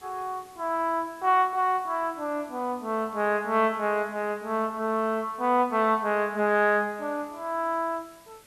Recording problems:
background hiss; SNR 27 dB

